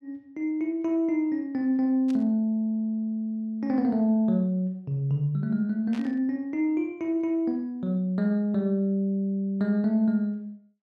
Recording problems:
static burst; at 2 s and at 6 s; peak -14 dB vs average level

